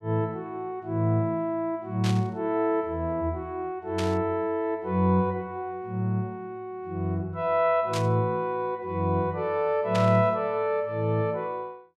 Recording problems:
burst of static; 4 times, first at 2 s; peak -3 dB vs average level

